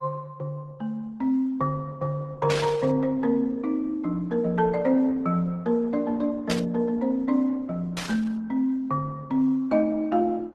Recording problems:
codec artefacts; Opus, then Opus, log-spectral distance 2 dB
static burst; at 2.5 s, at 6.5 s and at 8 s; peak +1 dB vs average level

